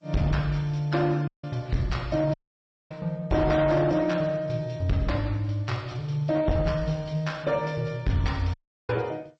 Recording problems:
codec artefacts; MP3, then G.722, log-spectral distance 2 dB
distorted audio; hard clipping, uneven, signal-to-distortion ratio 10 dB
dropout; at 1.5 s, at 2.5 s for 0.5 s and at 8.5 s

